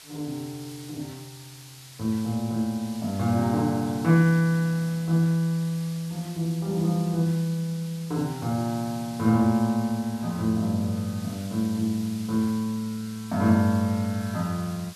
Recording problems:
background hiss; slope +2 dB per octave, SNR 18 dB

